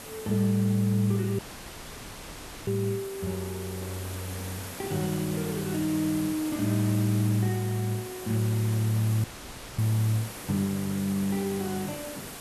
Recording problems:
hiss; slope -3 dB per octave, SNR 11 dB
dropout; at 1.5 s for 1.5 s and at 9 s for 0.5 s

